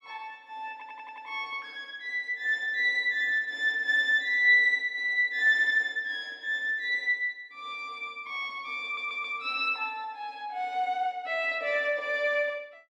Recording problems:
audio stuttering; at 0.5 s and at 9 s

